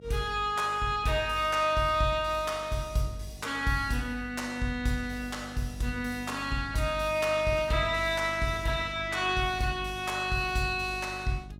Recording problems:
hum; 50 Hz, harmonics up to 650 Hz, SNR 18 dB

